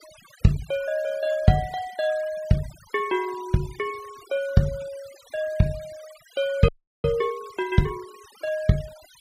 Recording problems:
noise reduction artefacts; signal-to-artefact ratio 21 dB
audio freezing; at 6.5 s

